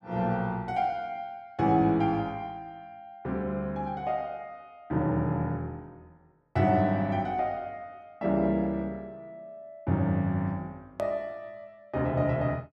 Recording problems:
hard cut with a click; at 11 s

